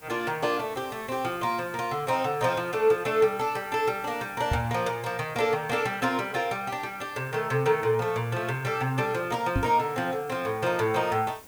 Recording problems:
background hiss; slope -4 dB per octave, SNR 22 dB
microphone thump; at 4.5 s and at 9.5 s; peak +3 dB vs average level

